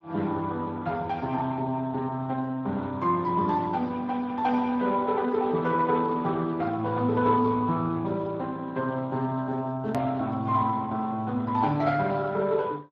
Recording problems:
lossy codec; Speex, log-spectral distance 3 dB, nothing above 13.1 kHz
hard cut with a click; at 10 s

